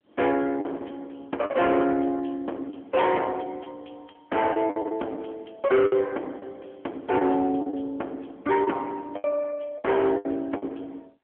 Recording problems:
phone line; 240 Hz to 3.3 kHz, AMR-NB
distortion; hard clipping, signal-to-distortion ratio 9 dB
packet loss; 8% of the sound replaced, filled with the last packet

